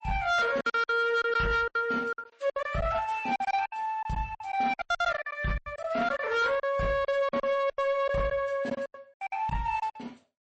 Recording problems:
lossy compression; MP3, log-spectral distance 2 dB, nothing above 8.2 kHz
distortion; soft clipping, signal-to-distortion ratio 11 dB
lost packets; 16% of the sound replaced, filled with silence

